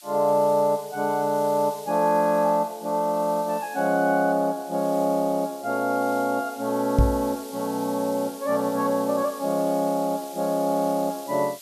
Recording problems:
hiss; slope +6 dB per octave, SNR 19 dB
microphone bump; at 7 s; peak +7 dB vs average level

